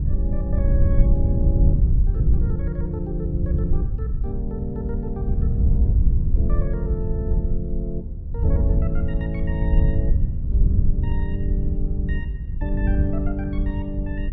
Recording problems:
wind on the microphone; below 82 Hz, SNR -7 dB

